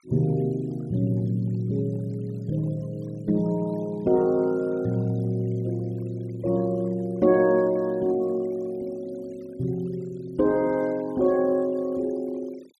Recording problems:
denoising artefacts; signal-to-artefact ratio 26 dB

